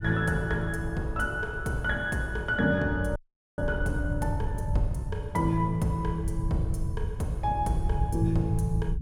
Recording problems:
rumble; below 110 Hz, SNR 5 dB
frozen audio; at 3 s

